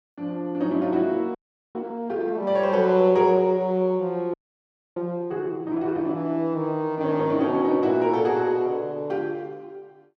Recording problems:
audio freezing; at 1.5 s and at 4.5 s for 0.5 s

